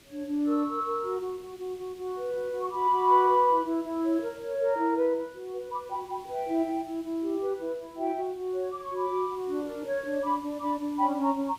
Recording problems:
background hiss; SNR 25 dB

